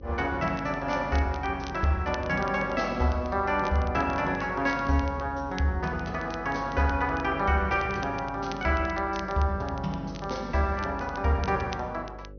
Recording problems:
treble missing; nothing above 6.3 kHz
hum; 50 Hz, harmonics up to 550 Hz, SNR 17 dB
crackling; vinyl, SNR 22 dB

